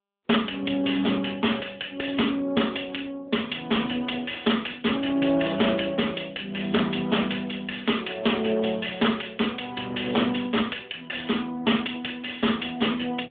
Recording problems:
phone line; 220 Hz to 3.6 kHz, AMR-NB
distortion; hard clipping, signal-to-distortion ratio 14 dB

